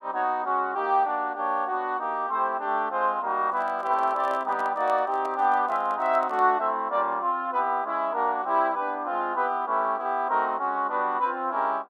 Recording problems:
handling noise; from 3.5 to 6.5 s; peak -9 dB vs average level

